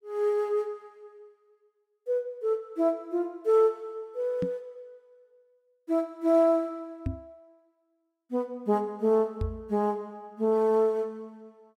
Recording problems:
microphone bump; at 4.5 s, at 7 s and at 9.5 s; peak 0 dB vs average level

